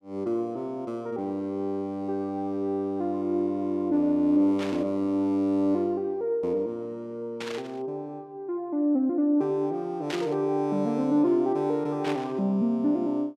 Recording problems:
static burst; 4 times, first at 4.5 s; peak -3 dB vs average level

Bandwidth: 13.5 kHz